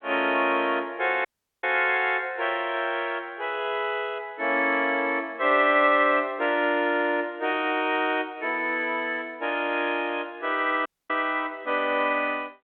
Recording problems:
phone line; 240 Hz to 3.6 kHz, G.726
dropout; at 1.5 s and at 11 s

